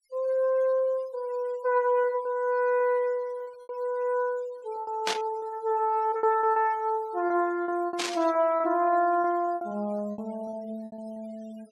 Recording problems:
noise reduction artefacts; signal-to-artefact ratio 25 dB
lost packets; 9% of the sound replaced, filled with repeated pitch periods
static burst; at 5 s and at 8 s; peak +2 dB vs average level

